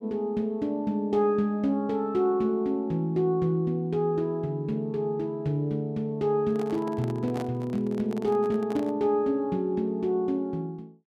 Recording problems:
handling noise; from 6.5 to 9 s; peak -6 dB vs average level

